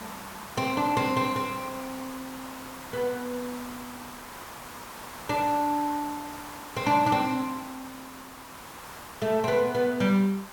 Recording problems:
background hiss; SNR 13 dB

